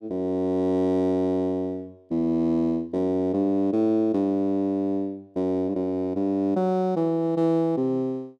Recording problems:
none

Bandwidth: 13 kHz